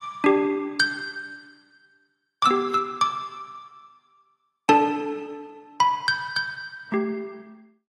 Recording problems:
lossy codec; AAC, log-spectral distance 2 dB, nothing above 11.3 kHz

